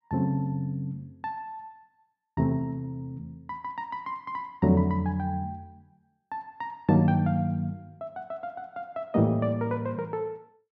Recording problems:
none

